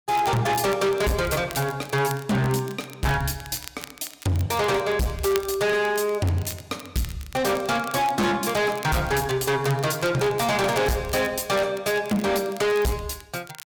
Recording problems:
distortion; hard clipping, signal-to-distortion ratio 7 dB
crackling; vinyl, SNR 19 dB

